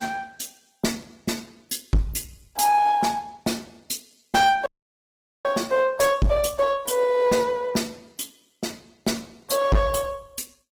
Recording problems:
codec artefacts; Opus, log-spectral distance 5 dB
distorted audio; hard clipping, uneven, signal-to-distortion ratio 7 dB
dropout; at 4.5 s for 1 s

